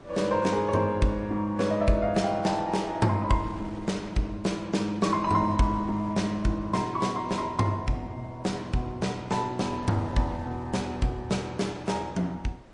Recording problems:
lossy compression; MP3, log-spectral distance 2 dB, nothing above 10.1 kHz
wind on the microphone; below 730 Hz, SNR 20 dB

